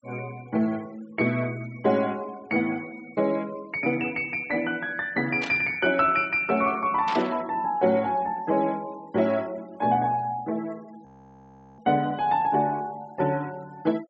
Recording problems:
treble missing; nothing above 7.8 kHz
noise reduction artefacts; signal-to-artefact ratio 24 dB
static burst; at 5.5 s and at 7 s; peak -4 dB vs average level
audio freezing; at 11 s for 0.5 s

